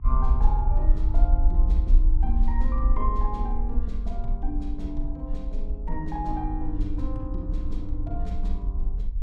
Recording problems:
hum; 50 Hz, harmonics up to 1.2 kHz, SNR 22 dB
rumble; below 50 Hz, SNR -7 dB

